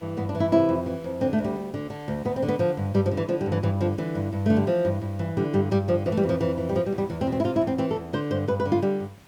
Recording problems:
hiss; slope -3 dB per octave, SNR 27 dB

